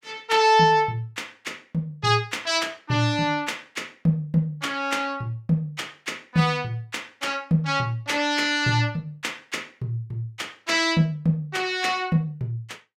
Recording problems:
none

